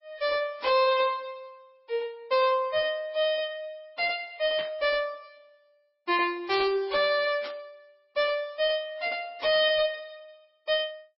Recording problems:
lossy codec; MP3, log-spectral distance 2 dB, nothing above 5 kHz
distorted audio; hard clipping, uneven, signal-to-distortion ratio 11 dB
static burst; at 4.5 s, at 7.5 s and at 9.5 s; peak -8 dB vs average level

